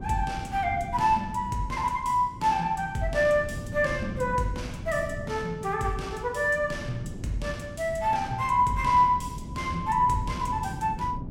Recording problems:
wind on the microphone; below 210 Hz, SNR 12 dB

